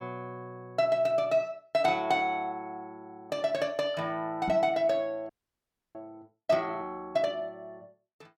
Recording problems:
microphone thump; at 4.5 s; peak -2 dB vs average level
frozen audio; at 5.5 s for 0.5 s

